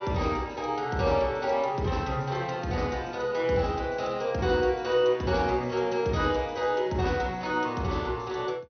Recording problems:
treble cut off; nothing above 6.1 kHz

